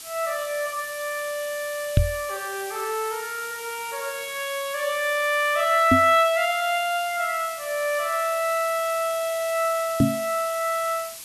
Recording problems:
background hiss; slope +3 dB per octave, SNR 12 dB
microphone bump; at 2 s, at 6 s and at 10 s; peak +9 dB vs average level

